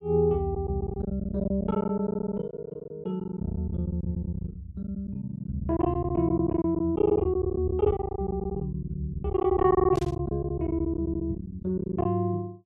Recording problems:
lost packets; 17% of the sound replaced, filled with silence
burst of static; at 10 s; peak -11 dB vs average level

